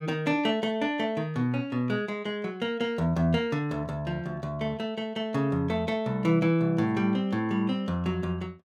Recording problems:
none

